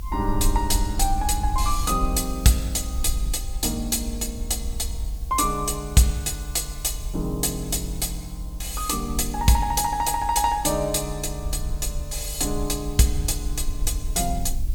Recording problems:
hiss; SNR 24 dB
low-frequency rumble; below 60 Hz, SNR 7 dB

